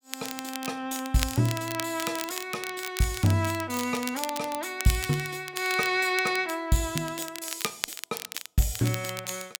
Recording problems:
crackle; vinyl, SNR 8 dB

